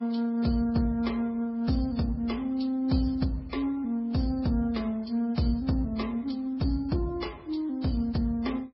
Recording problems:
codec artefacts; MP3, then Vorbis, log-spectral distance 2 dB, nothing above 5.2 kHz

